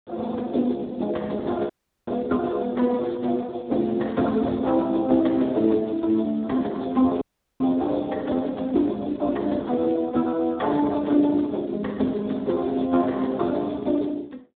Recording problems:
phone line; 220 Hz to 3.6 kHz, Speex
dropout; at 1.5 s and at 7 s

